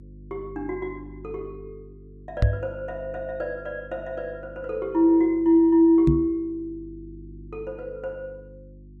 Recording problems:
electrical hum; 50 Hz, harmonics up to 350 Hz, SNR 21 dB
microphone thump; at 2.5 s and at 6 s; peak +6 dB vs average level

